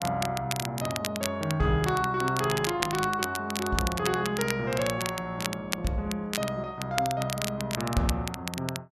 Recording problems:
crackle; vinyl, SNR 6 dB

